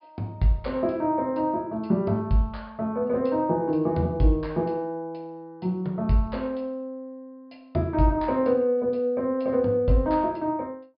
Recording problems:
treble missing; nothing above 5.1 kHz

